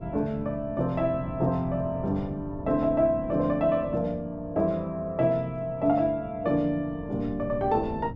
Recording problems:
wind on the microphone; below 220 Hz, SNR 15 dB

